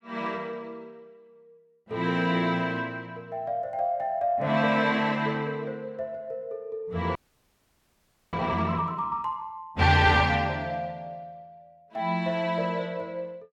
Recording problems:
frozen audio; at 7 s for 1 s

